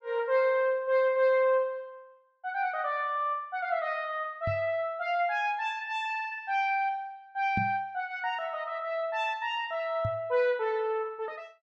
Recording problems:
microphone thump; at 4.5 s, at 7.5 s and at 10 s; peak +1 dB vs average level

